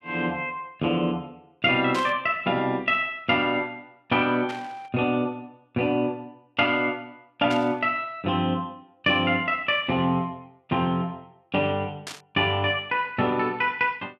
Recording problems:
static burst; 4 times, first at 2 s; peak -6 dB vs average level

